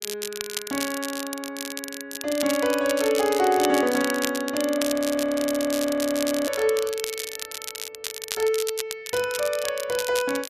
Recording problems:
crackle; vinyl, SNR 7 dB
frozen audio; at 5 s for 1.5 s

